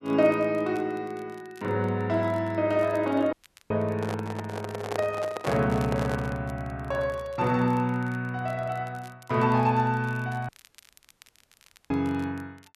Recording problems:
crackling; vinyl, SNR 28 dB
dropout; at 3.5 s and at 10 s for 1.5 s
microphone handling noise; from 4 to 6.5 s; peak +1 dB vs average level

